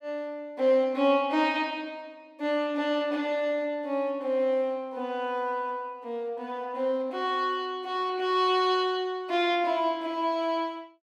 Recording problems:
none

